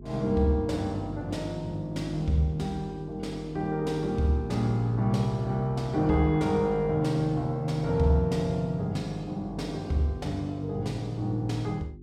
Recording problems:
hum; 50 Hz, harmonics up to 400 Hz, SNR 17 dB

